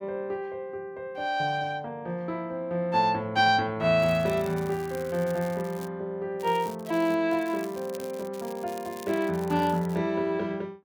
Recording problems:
crackling; from 4 to 6 s, at 6.5 s and from 7.5 to 10 s; loose cable, SNR 20 dB

